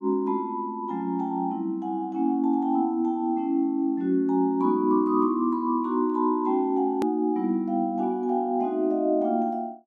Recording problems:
hard cut with a click; at 7 s

